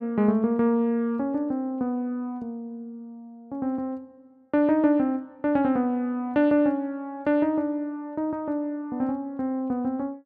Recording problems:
none

